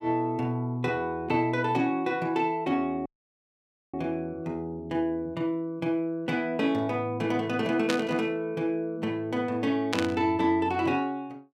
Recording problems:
audio cutting out; at 3 s for 1 s
static burst; at 8 s and at 10 s; peak +2 dB vs average level

